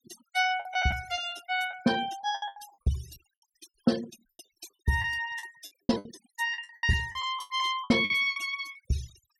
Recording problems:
denoising artefacts; signal-to-artefact ratio 15 dB
lost packets; 15% of the sound replaced, filled with the last packet

